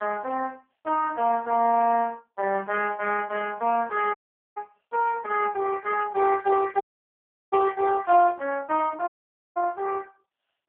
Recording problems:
telephone audio; 260 Hz to 2.7 kHz, AMR-NB
audio cutting out; at 4 s, at 7 s for 0.5 s and at 9 s

